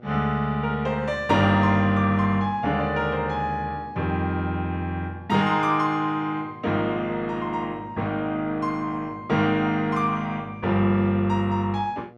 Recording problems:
hum; 60 Hz, harmonics up to 1.4 kHz, SNR 24 dB

